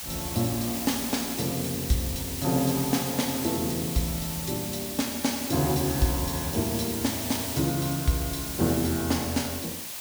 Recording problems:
background hiss; slope 0 dB per octave, SNR 4 dB

